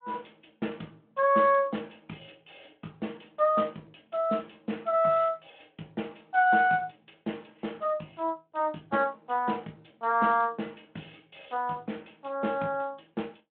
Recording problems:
phone line; 170 Hz to 3.6 kHz, Speex

